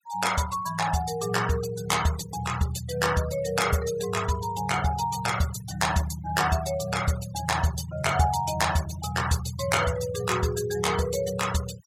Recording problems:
denoising artefacts; signal-to-artefact ratio 13 dB

